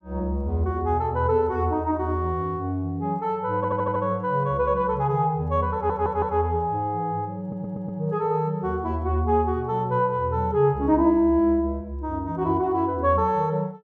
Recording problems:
stutter; at 3.5 s, at 5.5 s and at 7.5 s

